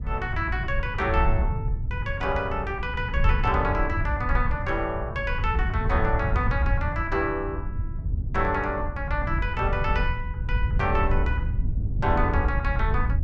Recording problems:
wind on the microphone; below 96 Hz, SNR 1 dB

